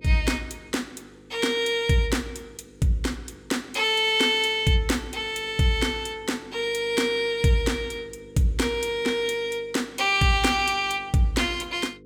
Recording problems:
hum; 50 Hz, harmonics up to 500 Hz, SNR 25 dB

